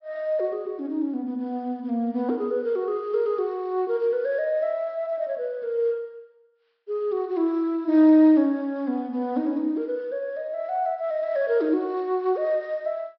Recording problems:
treble cut off; nothing above 5.5 kHz

